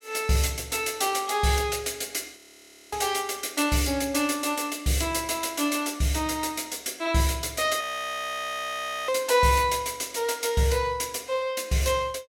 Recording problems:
audio freezing; at 2.5 s for 0.5 s and at 8 s for 1.5 s

